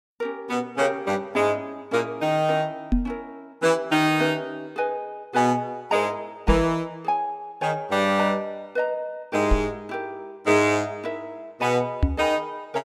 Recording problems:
knock on the microphone; 4 times, first at 3 s; peak +7 dB vs average level

